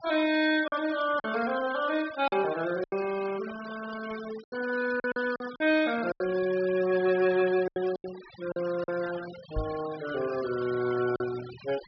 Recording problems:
treble cut off; nothing above 5.5 kHz
noise reduction artefacts; signal-to-artefact ratio 15 dB
lost packets; 7% of the sound replaced, filled with silence
microphone bump; at 9.5 s; peak -1 dB vs average level

